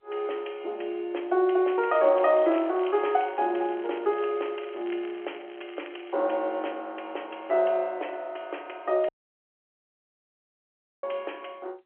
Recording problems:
telephone audio; 300 Hz to 3.3 kHz, G.711
crackle; from 2 to 6 s; loose cable, SNR 23 dB
dropout; at 9 s for 2 s

